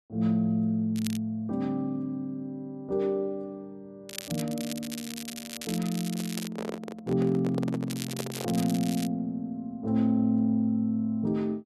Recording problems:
crackle; at 1 s, from 4 to 6.5 s and from 8 to 9 s; loose cable, SNR 10 dB
microphone handling noise; from 6 to 8.5 s; peak -1 dB vs average level

